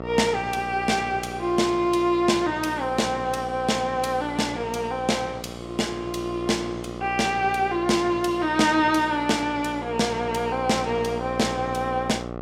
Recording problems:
hum; 60 Hz, harmonics up to 1.5 kHz, SNR 11 dB

